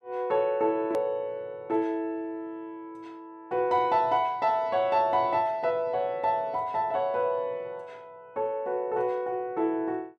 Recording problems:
hard cut with a click; at 1 s

